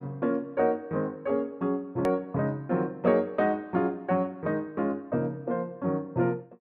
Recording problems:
click at an edit; at 2 s

